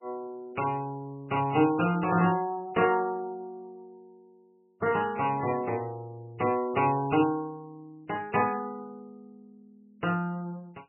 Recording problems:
lossy codec; MP3, log-spectral distance 2 dB, nothing above 2.8 kHz

